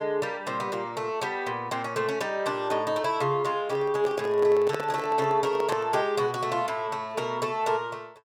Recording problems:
handling noise; from 3.5 to 6 s; peak -1 dB vs average level

